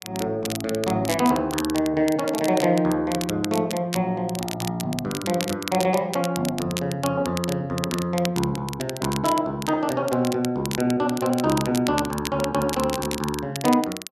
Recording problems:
crackling; vinyl, SNR 10 dB

